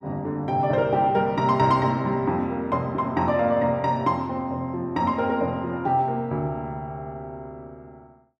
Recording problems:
none

